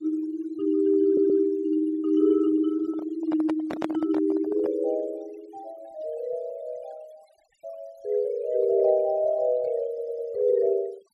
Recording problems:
denoising artefacts; signal-to-artefact ratio 27 dB
audio stuttering; at 1 s and at 10 s
handling noise; from 3 to 4.5 s; peak -3 dB vs average level

